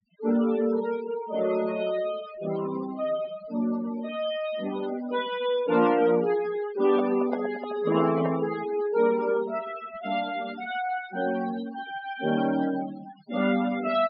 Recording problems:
treble cut off; nothing above 5.5 kHz
noise reduction artefacts; signal-to-artefact ratio 13 dB
handling noise; from 7 to 8.5 s; peak 0 dB vs average level

